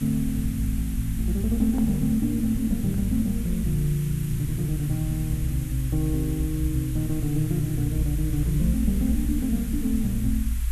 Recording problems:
background hiss; SNR 15 dB
rumble; below 60 Hz, strongest tone 58 Hz, SNR 6 dB

